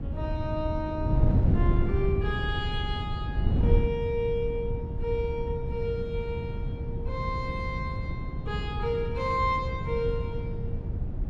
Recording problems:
wind on the microphone; below 130 Hz, SNR -2 dB

